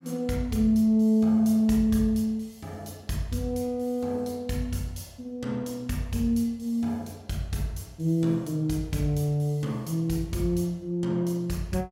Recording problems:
none

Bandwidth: 16 kHz